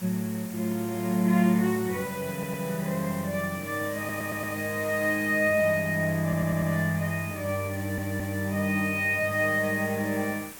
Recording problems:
background hiss; slope -2 dB per octave, SNR 14 dB
stutter; 4 times, first at 2.5 s

